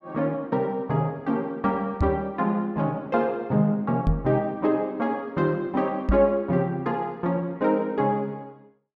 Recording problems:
knock on the microphone; at 2 s, at 4 s and at 6 s; peak +5 dB vs average level

